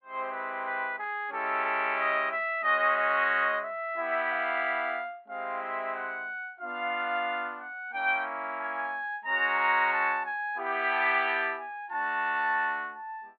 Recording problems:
treble cut off; nothing above 4.5 kHz

